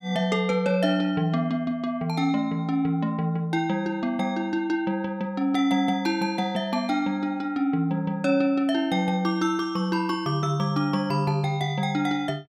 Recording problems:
none

